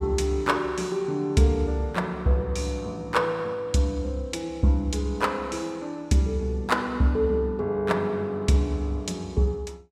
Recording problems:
none

